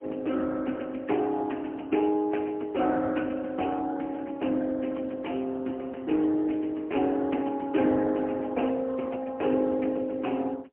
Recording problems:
phone line; 220 Hz to 3.1 kHz, AMR-NB, then MP3

